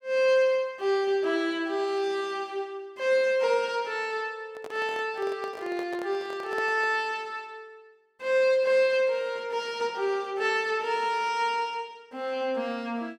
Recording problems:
handling noise; from 4.5 to 7 s; peak -7 dB vs average level

